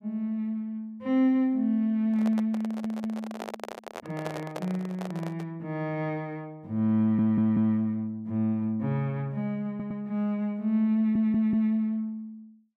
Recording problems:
handling noise; from 2 to 5.5 s; peak -4 dB vs average level
stutter; 4 times, first at 2.5 s

